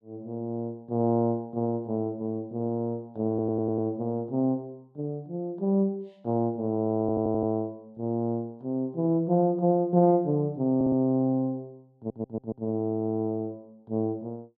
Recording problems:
audio stuttering; 4 times, first at 3.5 s

